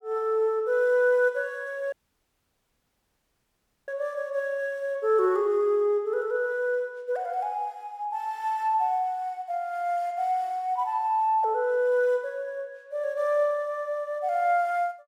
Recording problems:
dropout; at 2 s for 2 s

